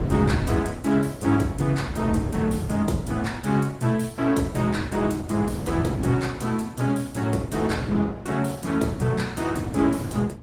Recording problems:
lossy codec; Opus, log-spectral distance 3 dB
wind on the microphone; below 260 Hz, SNR 6 dB

